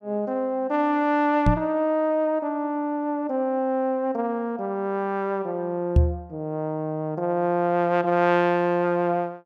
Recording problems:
microphone bump; at 1.5 s and at 6 s; peak +9 dB vs average level

